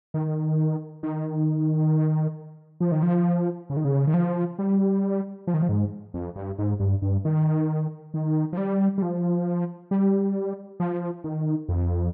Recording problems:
none

